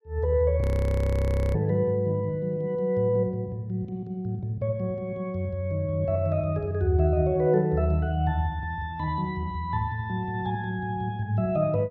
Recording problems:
audio freezing; at 0.5 s for 1 s

